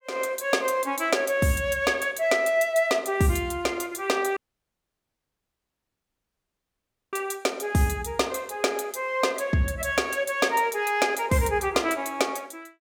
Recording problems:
dropout; at 4.5 s for 3 s

